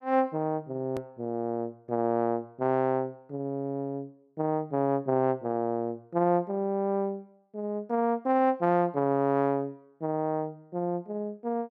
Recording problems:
edit click; at 1 s

